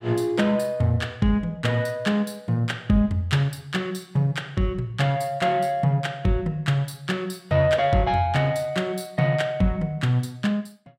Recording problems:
none

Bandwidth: 16 kHz